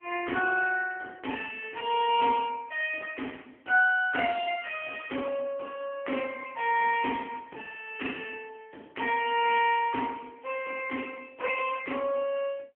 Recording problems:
telephone audio; 300 Hz to 3.3 kHz, AMR-NB

